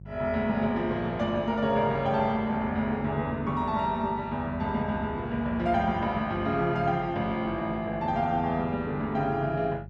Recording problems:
electrical hum; 50 Hz, harmonics up to 400 Hz, SNR 17 dB

